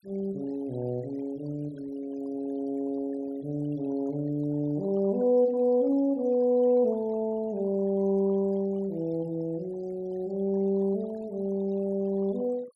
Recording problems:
denoising artefacts; signal-to-artefact ratio 25 dB

